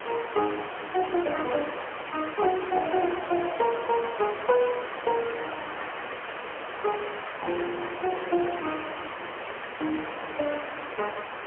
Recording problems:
phone line; 280 Hz to 3.2 kHz, AMR-NB, then MP3
background hiss; SNR 7 dB

